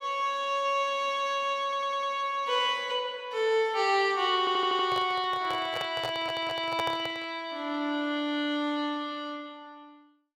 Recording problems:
audio stuttering; at 1.5 s, at 4.5 s and at 6 s
microphone handling noise; from 5 to 7.5 s; peak -2 dB vs average level

